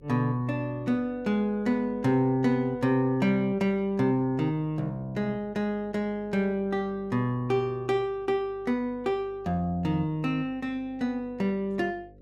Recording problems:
hum; 50 Hz, harmonics up to 550 Hz, SNR 25 dB

